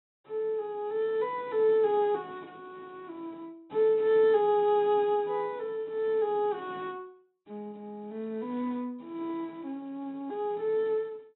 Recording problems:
low-pass filter; nothing above 3.9 kHz

